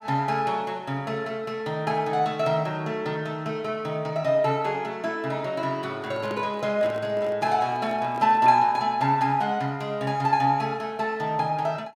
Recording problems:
microphone handling noise; from 6 to 8.5 s; peak -7 dB vs average level

